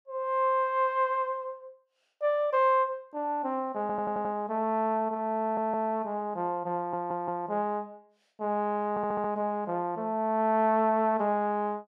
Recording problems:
stutter; 4 times, first at 4 s

